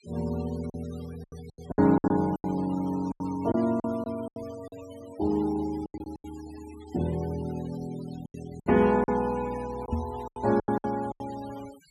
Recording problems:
noise reduction artefacts; signal-to-artefact ratio 20 dB
packet loss; 12% of the sound replaced, filled with silence
knock on the microphone; at 10 s; peak +3 dB vs average level

